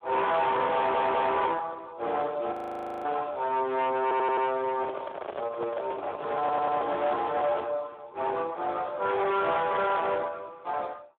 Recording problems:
phone line; 340 Hz to 3.7 kHz, Speex
distorted audio; hard clipping, uneven, signal-to-distortion ratio 7 dB
stutter; at 1 s, at 4 s and at 6.5 s
frozen audio; at 2.5 s for 0.5 s
handling noise; from 4.5 to 7.5 s; peak -2 dB vs average level

